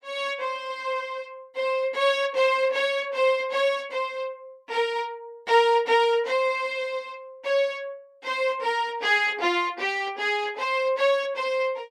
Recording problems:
none

